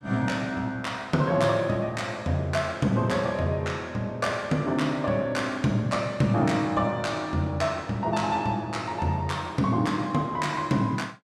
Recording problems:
none

